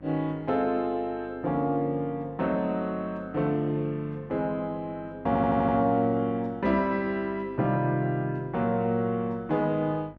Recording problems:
hum; 50 Hz, harmonics up to 1.6 kHz, SNR 23 dB
stutter; at 5.5 s

